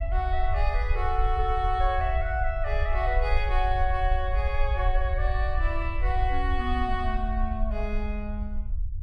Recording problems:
rumble; below 62 Hz, SNR 0 dB

